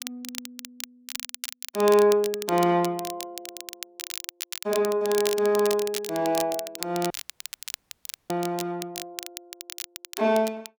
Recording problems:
crackle; vinyl, SNR 11 dB
dropout; at 7 s for 1 s

